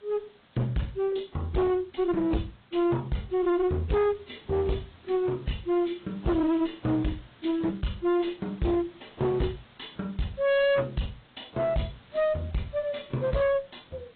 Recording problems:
low-pass filter; nothing above 3.9 kHz
lossy codec; AAC, log-spectral distance 9 dB
distorted audio; hard clipping, uneven, signal-to-distortion ratio 6 dB
hiss; SNR 27 dB

